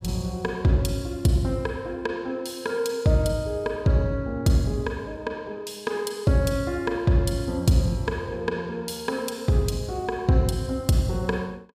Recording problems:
none

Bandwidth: 15 kHz